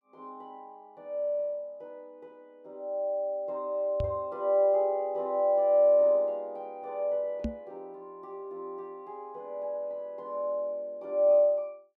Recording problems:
microphone thump; at 4 s and at 7.5 s; peak -1 dB vs average level

